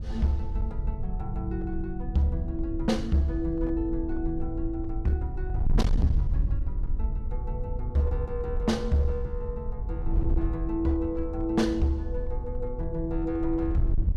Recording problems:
distortion; hard clipping, uneven, signal-to-distortion ratio 12 dB
wind noise; below 70 Hz, SNR 3 dB

